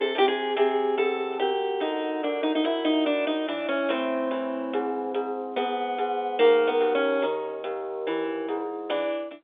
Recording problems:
telephone audio; 320 Hz to 3.6 kHz, G.711

